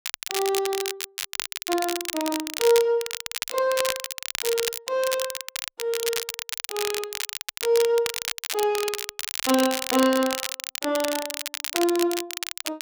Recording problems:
crackle; vinyl, SNR 4 dB

